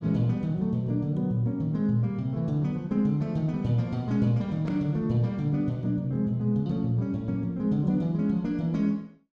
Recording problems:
none

